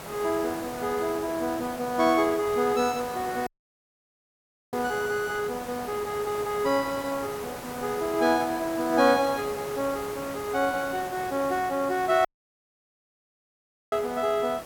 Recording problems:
background hiss; SNR 12 dB
dropout; at 3.5 s for 1.5 s and at 12 s for 1.5 s

